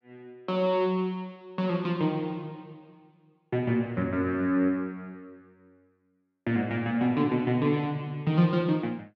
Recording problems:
none

